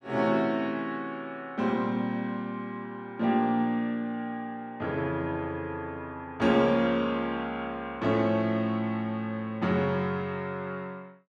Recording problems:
none

